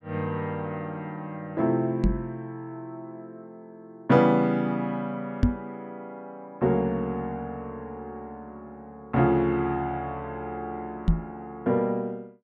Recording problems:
microphone bump; at 2 s, at 5.5 s and at 11 s; peak +9 dB vs average level

